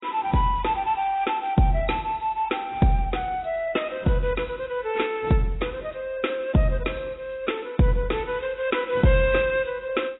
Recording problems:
codec artefacts; AAC, log-spectral distance 4 dB, nothing above 3.8 kHz

